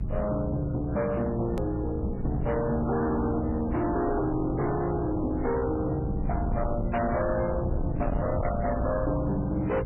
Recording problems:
lossy compression; MP3, log-spectral distance 2 dB, nothing above 13.1 kHz
distorted audio; hard clipping, uneven, signal-to-distortion ratio 7 dB
hum; 60 Hz, harmonics up to 420 Hz, SNR 7 dB
low-frequency rumble; below 150 Hz, SNR 6 dB
edit click; at 1.5 s

